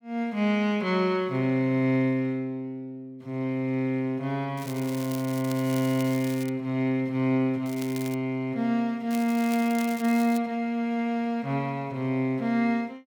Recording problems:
crackling; from 4.5 to 6.5 s, at 7.5 s and from 9 to 10 s; loose cable, SNR 16 dB

